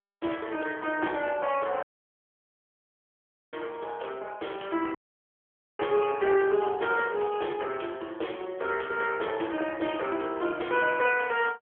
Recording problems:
telephone audio; 300 Hz to 3.3 kHz, AMR-NB
audio cutting out; at 2 s for 1.5 s and at 5 s for 1 s

